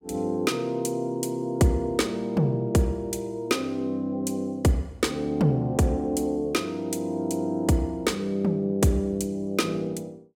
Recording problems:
none

